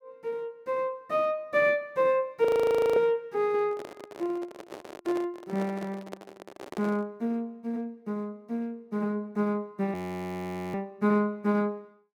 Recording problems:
frozen audio; at 2.5 s for 0.5 s and at 10 s for 1 s
handling noise; from 3.5 to 7 s; peak -5 dB vs average level

